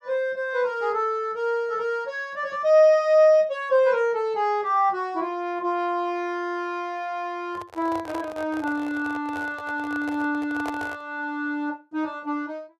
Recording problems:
handling noise; from 7.5 to 11 s; peak -6 dB vs average level

